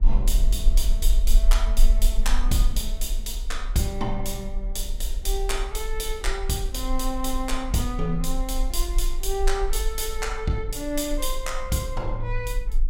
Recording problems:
rumble; below 38 Hz, strongest tone 20 Hz, SNR 0 dB
wind noise; below 210 Hz, SNR 18 dB

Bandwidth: 16 kHz